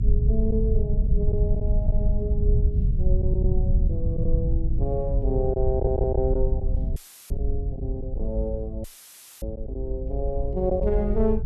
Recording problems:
rumble; below 76 Hz, SNR -4 dB
lost packets; 3% of the sound replaced, filled with silence
audio stuttering; at 5.5 s
audio cutting out; at 7 s and at 9 s for 0.5 s; filled with static

